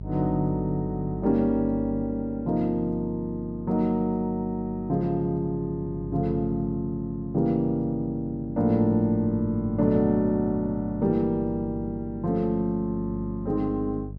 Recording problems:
hum; 50 Hz, harmonics up to 450 Hz, SNR 12 dB

